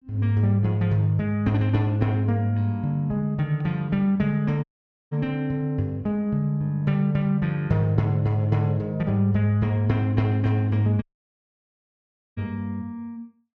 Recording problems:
audio cutting out; at 4.5 s and at 11 s for 1.5 s

